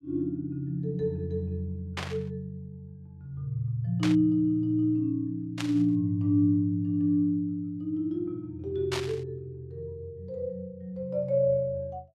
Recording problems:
static burst; 4 times, first at 2 s; peak -1 dB vs average level

